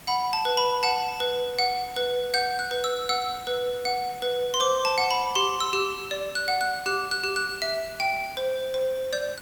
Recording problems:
background hiss; slope -3 dB per octave, SNR 19 dB

